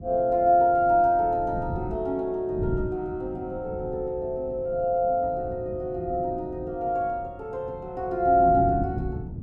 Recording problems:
wind noise; below 200 Hz, SNR 12 dB

